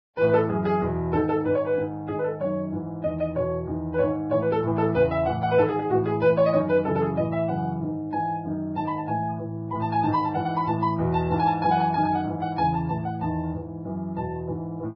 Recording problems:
lossy compression; Vorbis, log-spectral distance 2 dB

